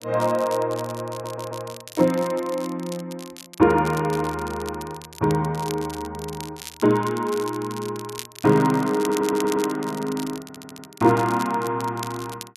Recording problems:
crackle; vinyl, SNR 16 dB
stutter; at 1 s, at 9 s and at 10 s

